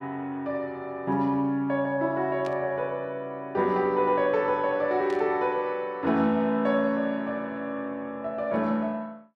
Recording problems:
static burst; at 2.5 s and at 5 s; peak -13 dB vs average level

